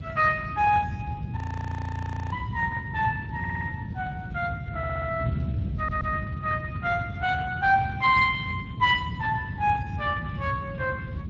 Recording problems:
codec artefacts; Speex, log-spectral distance 3 dB, nothing above 7.3 kHz
wind on the microphone; below 170 Hz, SNR 6 dB
frozen audio; at 1.5 s for 1 s
audio stuttering; at 3.5 s, at 5 s and at 6 s

